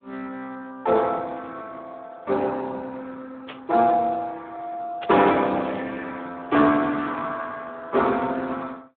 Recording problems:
telephone audio; 190 Hz to 4 kHz, Speex
burst of static; at 3.5 s, at 5 s and at 6.5 s; peak -9 dB vs average level

